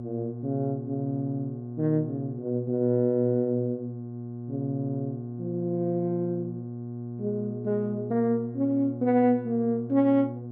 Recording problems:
hum; 60 Hz, harmonics up to 720 Hz, SNR 9 dB

